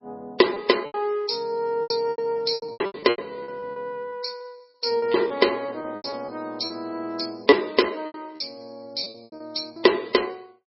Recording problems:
lossy codec; MP3, log-spectral distance 5 dB, nothing above 5.5 kHz
lost packets; 14% of the sound replaced, filled with repeated pitch periods

